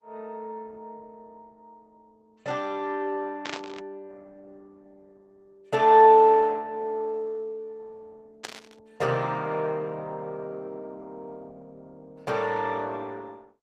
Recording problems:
lossy codec; Opus, log-spectral distance 3 dB, nothing above 15.1 kHz
burst of static; at 3.5 s and at 8.5 s; peak -6 dB vs average level

